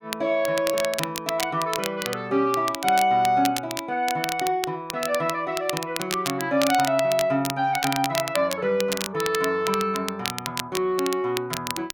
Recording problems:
crackling; vinyl, SNR 7 dB

